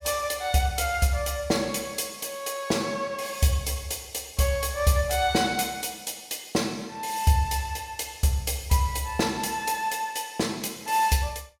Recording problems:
none

